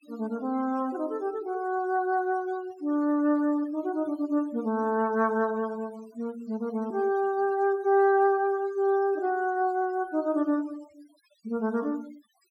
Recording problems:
denoising artefacts; signal-to-artefact ratio 25 dB

